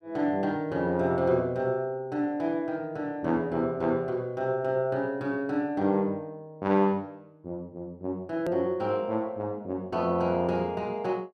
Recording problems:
edit click; at 8.5 s

